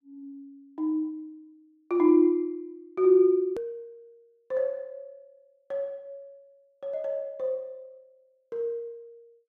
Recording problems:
edit click; at 3.5 s

